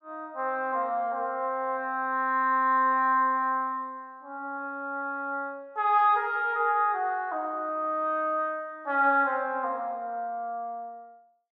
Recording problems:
none

